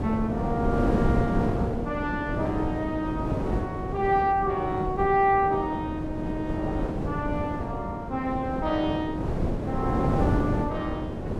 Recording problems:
wind noise; below 410 Hz, SNR 1 dB

